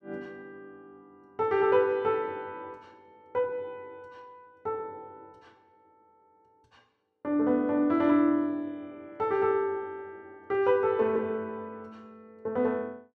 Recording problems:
none

